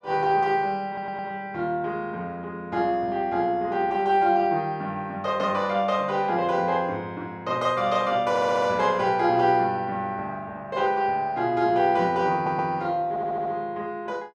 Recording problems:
audio stuttering; 4 times, first at 1 s

